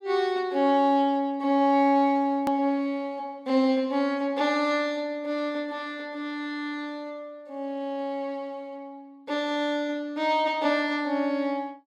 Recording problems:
edit click; at 2.5 s

